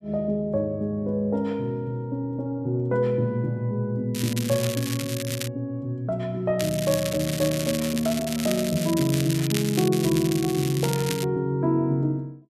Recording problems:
crackle; from 4 to 5.5 s and from 6.5 to 11 s; loose cable, SNR 7 dB

